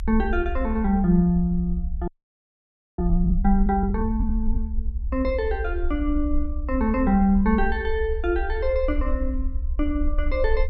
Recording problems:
rumble; below 64 Hz, SNR 5 dB
audio freezing; at 2 s for 1 s

